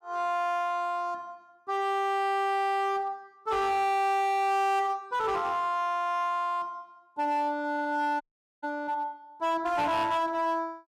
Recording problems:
distorted audio; hard clipping, uneven, signal-to-distortion ratio 11 dB
dropout; at 8 s

